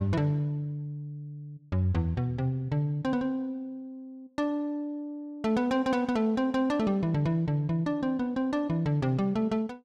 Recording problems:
none

